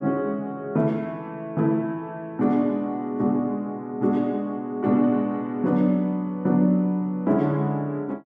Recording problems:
none

